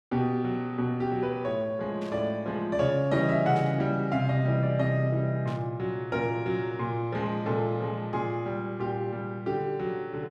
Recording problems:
burst of static; at 2 s, at 3.5 s and at 5.5 s; peak -14 dB vs average level

